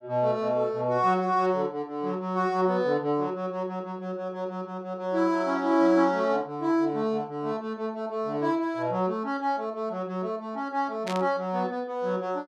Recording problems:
static burst; at 11 s; peak -4 dB vs average level

